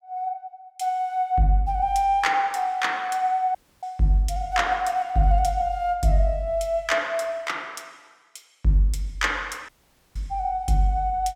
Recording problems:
audio cutting out; at 3.5 s and at 9.5 s

